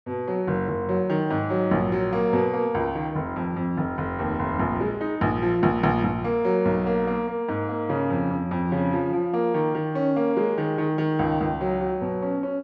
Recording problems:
none

